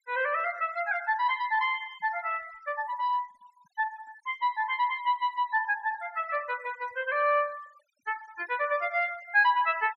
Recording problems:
denoising artefacts; signal-to-artefact ratio 22 dB

